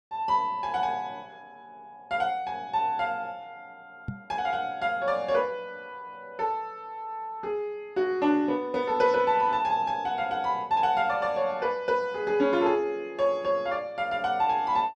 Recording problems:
microphone thump; at 4 s; peak -2 dB vs average level

